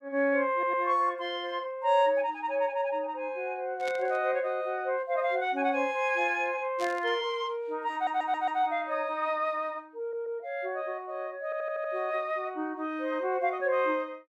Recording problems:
stutter; 4 times, first at 0.5 s
burst of static; at 4 s and at 7 s; peak -7 dB vs average level

